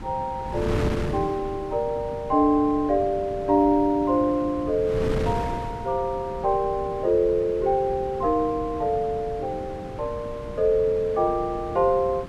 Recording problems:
wind on the microphone; below 380 Hz, SNR 11 dB

